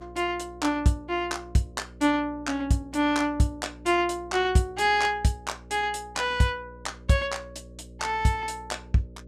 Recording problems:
mains hum; 60 Hz, harmonics up to 600 Hz, SNR 21 dB

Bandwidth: 15 kHz